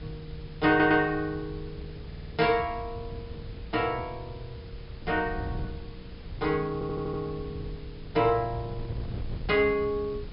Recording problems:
low-pass filter; nothing above 5.5 kHz
background hiss; SNR 25 dB
wind on the microphone; below 130 Hz, SNR 13 dB
audio stuttering; at 0.5 s, at 2 s and at 6.5 s

